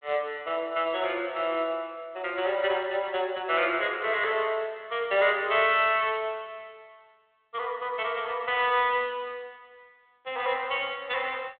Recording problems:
telephone audio; 280 Hz to 3.7 kHz, G.726

